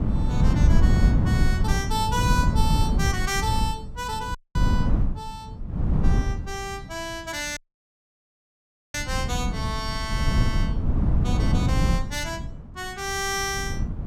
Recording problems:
wind on the microphone; below 150 Hz, SNR -5 dB
audio cutting out; at 4.5 s and at 7.5 s for 1.5 s

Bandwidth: 16.5 kHz